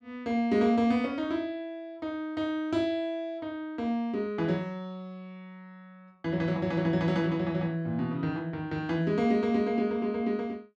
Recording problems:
none

